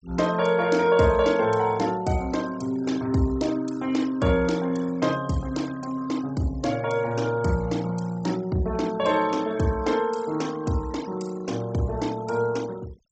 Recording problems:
low-pass filter; nothing above 8 kHz
noise reduction artefacts; signal-to-artefact ratio 19 dB

